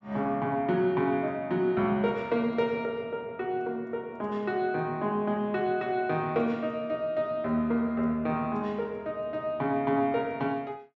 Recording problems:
treble missing; nothing above 8 kHz

